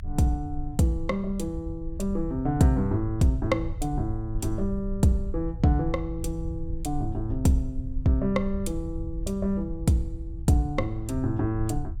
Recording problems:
rumble; below 74 Hz, SNR 9 dB

